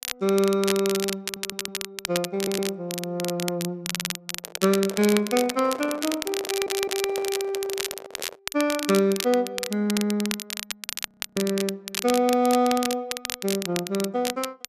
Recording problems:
crackle; vinyl, SNR 6 dB
audio stuttering; 4 times, first at 1 s
microphone handling noise; from 4.5 to 8.5 s; peak -6 dB vs average level
audio freezing; at 11 s for 0.5 s

